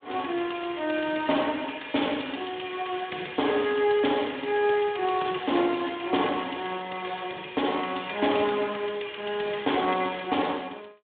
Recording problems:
phone line; 280 Hz to 3.6 kHz, Speex

